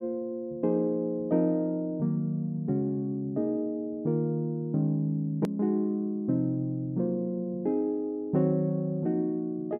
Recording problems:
edit click; at 5.5 s

